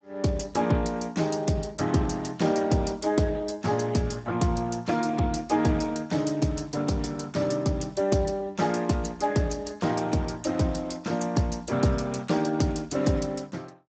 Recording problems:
codec artefacts; Speex, log-spectral distance 6 dB, nothing above 7.8 kHz

